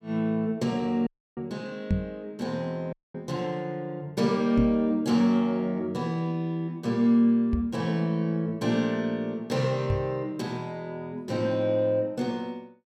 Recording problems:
dropout; at 1 s and at 3 s
microphone thump; 4 times, first at 2 s; peak +5 dB vs average level

